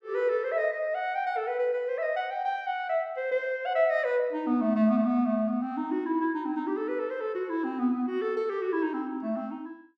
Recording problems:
none

